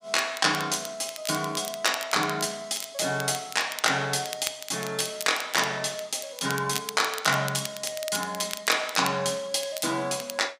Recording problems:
crackle; vinyl, SNR 11 dB

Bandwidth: 15 kHz